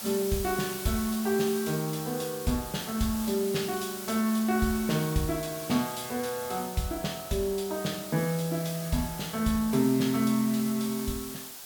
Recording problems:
background hiss; SNR 9 dB

